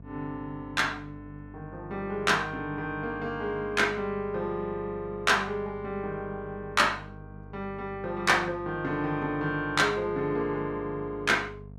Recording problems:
hum; 50 Hz, harmonics up to 700 Hz, SNR 17 dB

